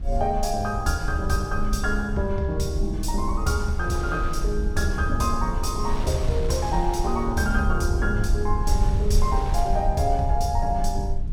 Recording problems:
low-frequency rumble; below 62 Hz, SNR 3 dB
wind noise; below 1.2 kHz, SNR 14 dB

